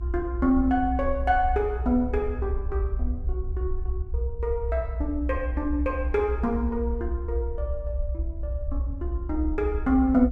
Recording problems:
low-frequency rumble; below 68 Hz, strongest tone 60 Hz, SNR 4 dB

